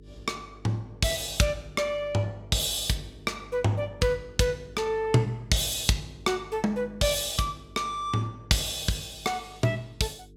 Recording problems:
mains hum; 50 Hz, harmonics up to 450 Hz, SNR 22 dB

